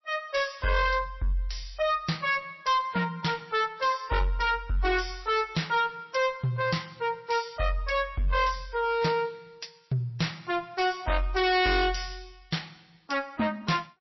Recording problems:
lossy compression; MP3, log-spectral distance 5 dB, nothing above 5.7 kHz
distorted audio; soft clipping, signal-to-distortion ratio 7 dB

